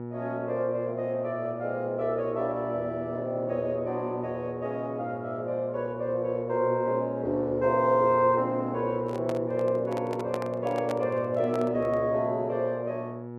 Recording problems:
hum; 60 Hz, harmonics up to 1.4 kHz, SNR 9 dB
microphone handling noise; from 9 to 12 s; peak -2 dB vs average level

